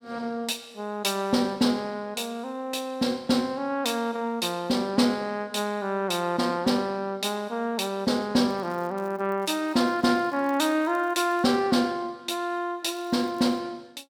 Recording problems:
crackling; from 8.5 to 11 s and at 13 s; loose cable, SNR 30 dB

